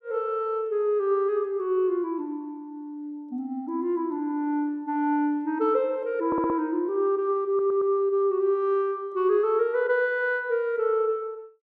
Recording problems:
audio stuttering; at 6.5 s and at 7.5 s

